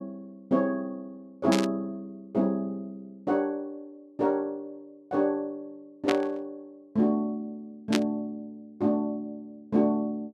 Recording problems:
burst of static; at 1.5 s, at 6 s and at 8 s; peak +4 dB vs average level

